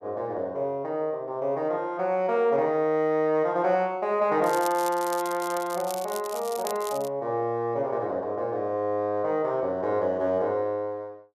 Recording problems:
crackle; from 4.5 to 7 s; loose cable, SNR 13 dB

